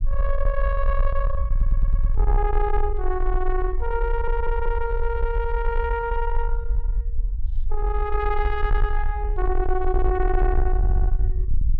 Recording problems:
distortion; soft clipping, signal-to-distortion ratio 11 dB
rumble; below 48 Hz, SNR -1 dB
audio stuttering; at 1.5 s, at 4 s and at 11 s

